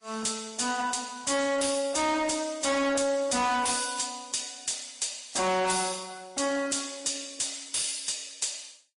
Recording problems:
codec artefacts; AAC, then MP3, log-spectral distance 10 dB, nothing above 10.4 kHz
distortion; soft clipping, signal-to-distortion ratio 6 dB

